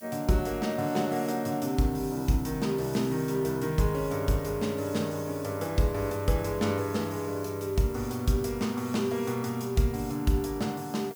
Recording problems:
hiss; slope +4 dB per octave, SNR 19 dB

